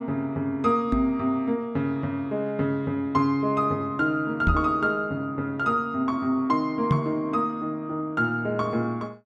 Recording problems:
microphone bump; at 1 s, at 4.5 s and at 7 s; peak +7 dB vs average level

